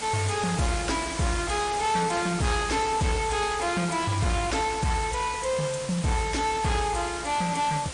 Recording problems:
codec artefacts; MP3, log-spectral distance 11 dB, nothing above 9.2 kHz
distortion; soft clipping, signal-to-distortion ratio 10 dB
hiss; slope -1 dB per octave, SNR 8 dB

